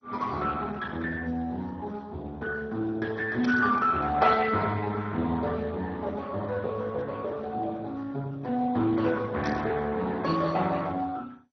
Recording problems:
lossy compression; Speex, then MP2, log-spectral distance 3 dB, nothing above 5.8 kHz
static burst; at 3.5 s and at 9.5 s; peak -6 dB vs average level

